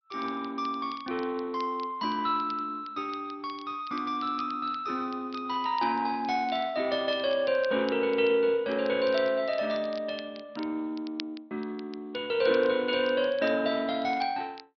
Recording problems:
treble cut off; nothing above 5.2 kHz
codec artefacts; Speex, log-spectral distance 3 dB
crackle; vinyl, SNR 21 dB

